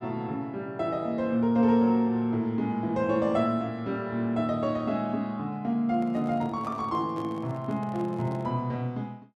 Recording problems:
handling noise; from 6 to 8.5 s; peak -12 dB vs average level

